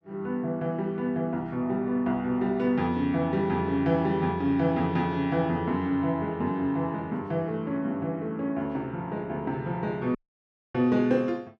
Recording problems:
dropout; at 10 s for 0.5 s

